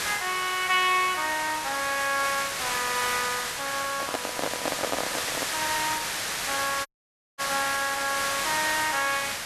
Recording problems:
hiss; SNR 2 dB
handling noise; from 4 to 5.5 s; peak +3 dB vs average level
audio cutting out; at 7 s for 0.5 s

